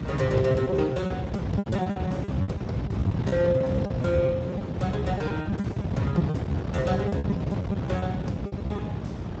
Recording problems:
lossy codec; Speex, log-spectral distance 2 dB, nothing above 7.3 kHz
wind noise; below 270 Hz, SNR 0 dB
lost packets; 17% of the sound replaced, filled with repeated pitch periods

